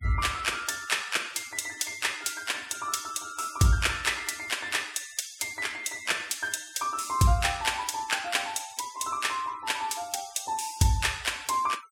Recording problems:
noise reduction artefacts; signal-to-artefact ratio 20 dB

